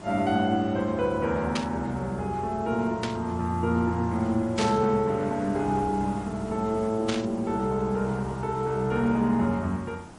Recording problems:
lossy codec; MP3, log-spectral distance 2 dB
background hiss; slope -6 dB per octave, SNR 17 dB
burst of static; 4 times, first at 1.5 s; peak 0 dB vs average level

